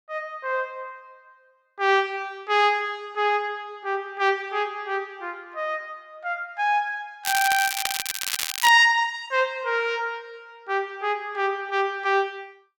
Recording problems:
crackle; from 7 to 8.5 s; loose cable, SNR 3 dB

